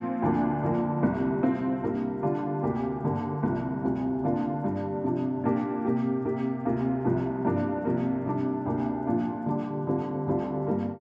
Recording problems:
none

